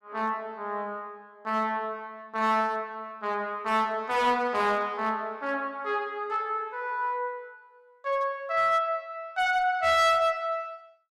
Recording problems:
distortion; hard clipping, uneven, signal-to-distortion ratio 11 dB

